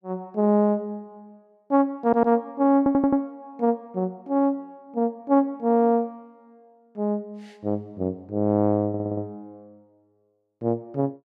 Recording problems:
stutter; at 2 s, at 3 s and at 9 s

